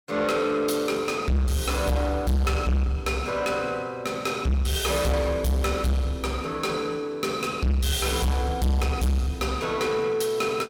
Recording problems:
distortion; soft clipping, signal-to-distortion ratio 7 dB

